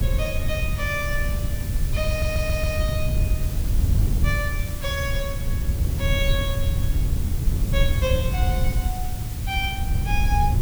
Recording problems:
background hiss; slope -1 dB per octave, SNR 8 dB
wind on the microphone; below 100 Hz, SNR -4 dB
audio stuttering; at 2 s

